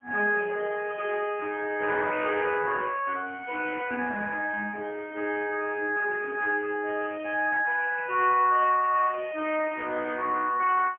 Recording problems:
phone line; 260 Hz to 3.1 kHz, AMR-NB, then MP3

